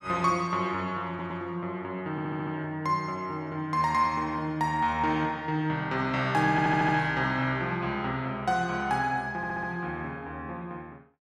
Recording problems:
stutter; 4 times, first at 1 s

